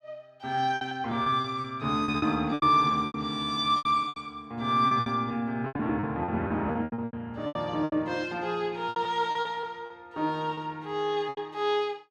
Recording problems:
lost packets; 15% of the sound replaced, filled with repeated pitch periods

